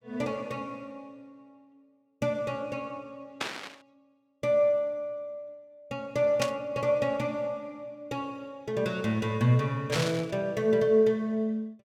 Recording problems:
static burst; at 3.5 s, at 6.5 s and at 10 s; peak +2 dB vs average level

